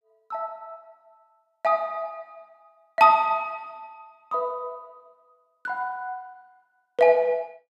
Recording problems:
none

